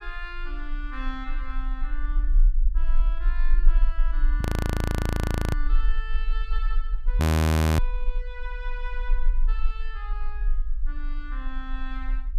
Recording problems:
low-frequency rumble; below 48 Hz, strongest tone 20 Hz, SNR -12 dB
audio freezing; at 4.5 s for 1 s and at 7 s for 0.5 s

